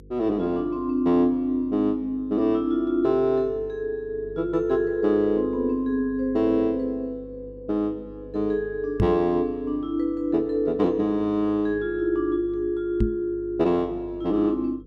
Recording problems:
hum; 50 Hz, harmonics up to 500 Hz, SNR 22 dB
knock on the microphone; at 9 s and at 13 s; peak +4 dB vs average level

